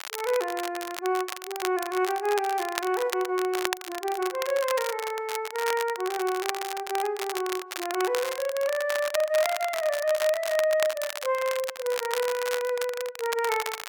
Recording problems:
crackling; vinyl, SNR 7 dB

